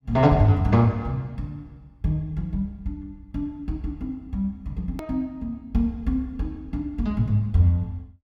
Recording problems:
edit click; at 5 s

